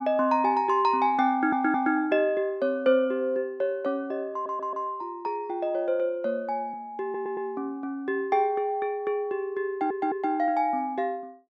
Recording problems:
audio stuttering; 4 times, first at 1.5 s

